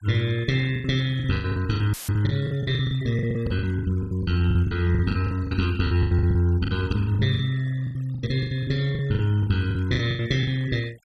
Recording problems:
denoising artefacts; signal-to-artefact ratio 22 dB
lost packets; 19% of the sound replaced, filled with the last packet
audio cutting out; at 2 s; filled with static

